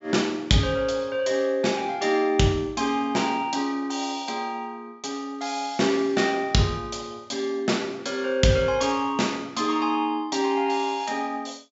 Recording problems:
treble missing; nothing above 8 kHz

